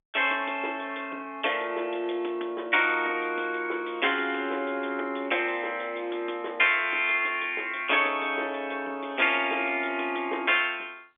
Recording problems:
phone line; 260 Hz to 3.5 kHz, G.711

